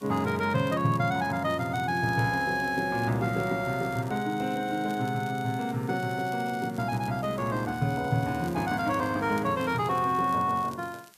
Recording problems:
hiss; slope 0 dB per octave, SNR 26 dB
crackle; vinyl, SNR 25 dB

